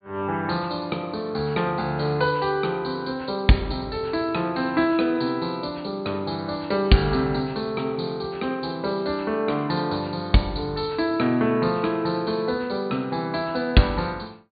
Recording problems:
treble missing; nothing above 4.6 kHz

